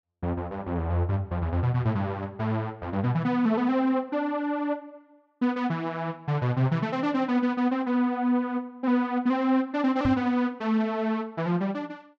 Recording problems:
knock on the microphone; at 10 s; peak 0 dB vs average level

